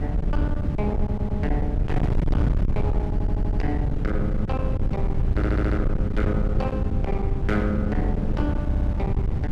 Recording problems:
distortion; hard clipping, signal-to-distortion ratio 7 dB
hum; 50 Hz, harmonics up to 450 Hz, SNR 12 dB
wind on the microphone; below 130 Hz, SNR -4 dB
stutter; 4 times, first at 1 s

